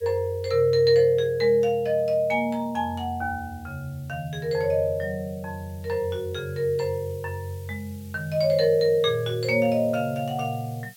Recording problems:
background hiss; slope +4 dB per octave, SNR 27 dB

